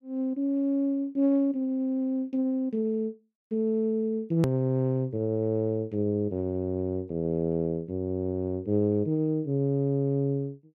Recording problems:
hard cut with a click; at 4.5 s

